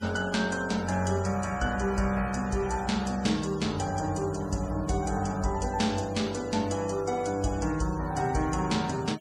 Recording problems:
noise reduction artefacts; signal-to-artefact ratio 18 dB

